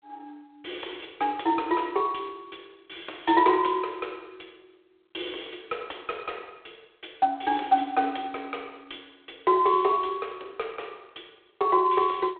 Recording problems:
phone line; 300 Hz to 3.5 kHz, G.726

